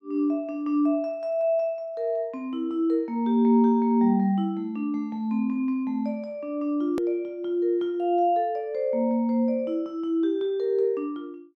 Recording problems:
hard cut with a click; at 7 s

